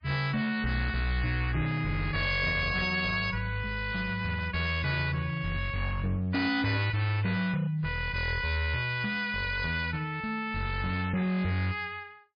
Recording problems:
lossy codec; MP3, log-spectral distance 4 dB, nothing above 5 kHz
distorted audio; hard clipping, signal-to-distortion ratio 10 dB

